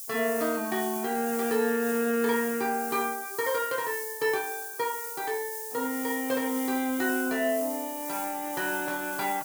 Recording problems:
background hiss; SNR 6 dB

